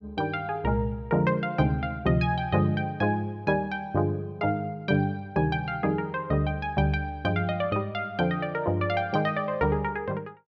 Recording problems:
none

